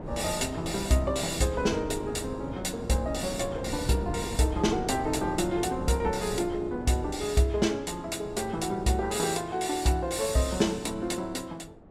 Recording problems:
wind on the microphone; below 430 Hz, SNR 10 dB

